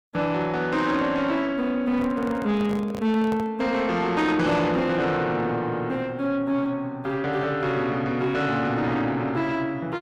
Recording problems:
distorted audio; soft clipping, signal-to-distortion ratio 11 dB
handling noise; from 2 to 3.5 s; peak -6 dB vs average level

